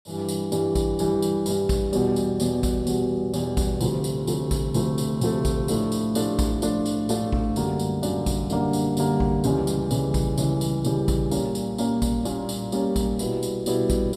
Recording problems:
none

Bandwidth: 15 kHz